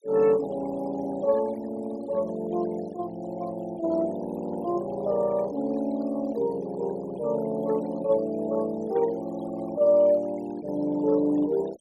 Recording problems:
noise reduction artefacts; signal-to-artefact ratio 22 dB

